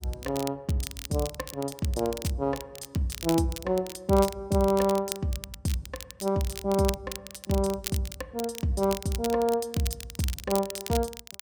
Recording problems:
crackling; vinyl, SNR 11 dB

